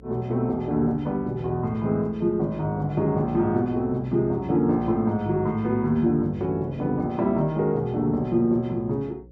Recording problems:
electrical hum; 60 Hz, harmonics up to 540 Hz, SNR 23 dB

